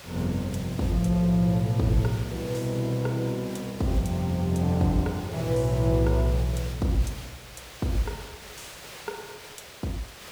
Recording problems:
background hiss; slope -2 dB per octave, SNR 16 dB

